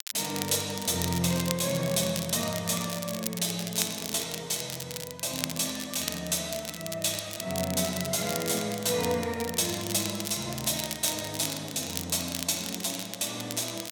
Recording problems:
crackle; vinyl, SNR 7 dB

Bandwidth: 17 kHz